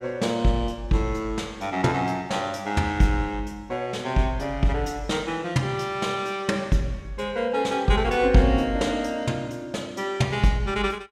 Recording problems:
none

